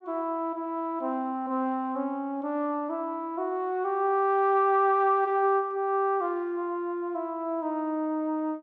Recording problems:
none

